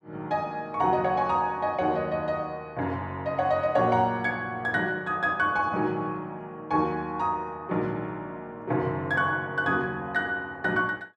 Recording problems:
none

